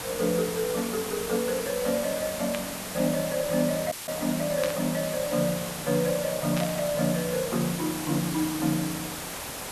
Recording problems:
background hiss; SNR 5 dB
burst of static; at 2.5 s, at 4.5 s and at 6.5 s; peak -1 dB vs average level
dropout; at 4 s

